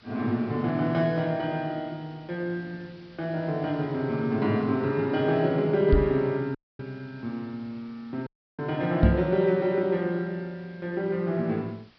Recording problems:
treble missing; nothing above 5.5 kHz
background hiss; SNR 28 dB
knock on the microphone; at 6 s and at 9 s; peak +10 dB vs average level
dropout; at 6.5 s and at 8.5 s

